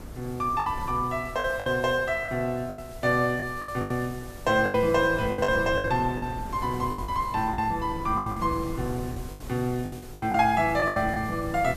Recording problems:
hiss; slope +2 dB per octave, SNR 23 dB
wind noise; below 230 Hz, SNR 14 dB
lost packets; 11% of the sound replaced, filled with the last packet

